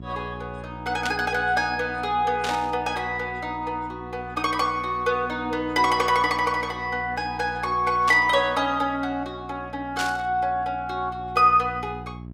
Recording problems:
mains hum; 60 Hz, harmonics up to 660 Hz, SNR 17 dB
burst of static; 4 times, first at 1 s; peak -1 dB vs average level

